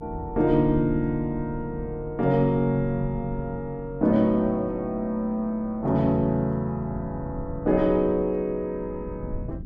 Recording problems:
low-frequency rumble; below 150 Hz, SNR 14 dB

